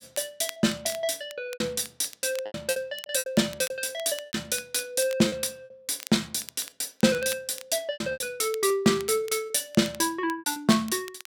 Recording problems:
crackling; vinyl, SNR 17 dB
lost packets; 11% of the sound replaced, filled with repeated pitch periods

